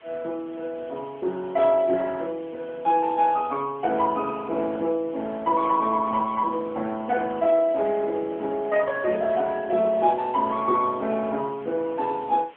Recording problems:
telephone audio; 260 Hz to 3.3 kHz, AMR-NB
hiss; SNR 27 dB

